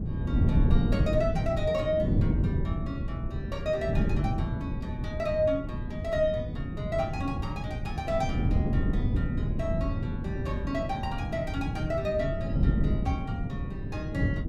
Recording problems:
wind noise; below 190 Hz, SNR -3 dB

